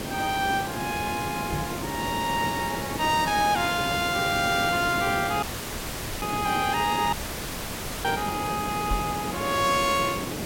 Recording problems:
hiss; slope -5 dB per octave, SNR 5 dB
microphone thump; at 1.5 s and at 9 s; peak -1 dB vs average level
audio cutting out; at 5.5 s for 1 s and at 7 s for 1 s

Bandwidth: 16.5 kHz